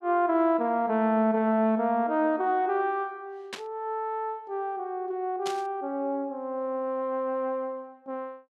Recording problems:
static burst; at 3.5 s and at 5.5 s; peak -4 dB vs average level

